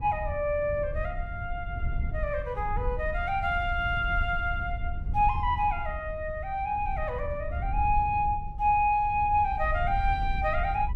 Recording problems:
wind on the microphone; below 76 Hz, SNR 7 dB

